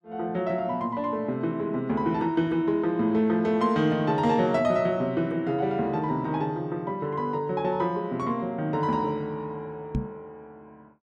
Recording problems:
microphone bump; at 10 s; peak +2 dB vs average level

